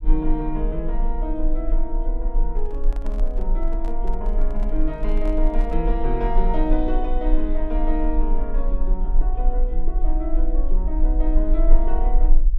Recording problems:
low-frequency rumble; below 34 Hz, strongest tone 20 Hz, SNR -4 dB
microphone handling noise; from 2.5 to 6 s; peak -9 dB vs average level

